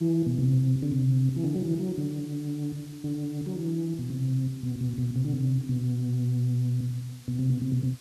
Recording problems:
background hiss; slope 0 dB per octave, SNR 24 dB

